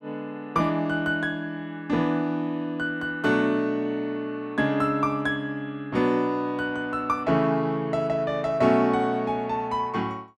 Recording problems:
none

